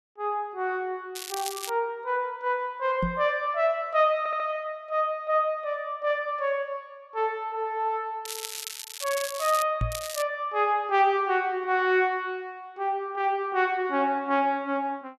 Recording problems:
crackle; at 1 s, from 8.5 to 9.5 s and at 10 s; loose cable, SNR 9 dB
knock on the microphone; at 3 s and at 10 s; peak +2 dB vs average level
stutter; at 4 s

